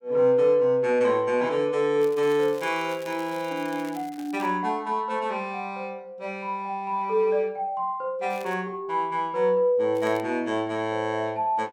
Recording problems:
crackling; from 2 to 4.5 s, at 8.5 s and at 10 s; loose cable, SNR 23 dB

